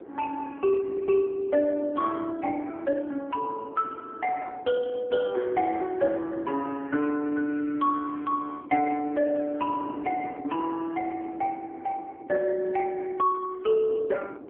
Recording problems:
phone line; 220 Hz to 2.2 kHz, AMR-NB
wind on the microphone; below 450 Hz, SNR 16 dB

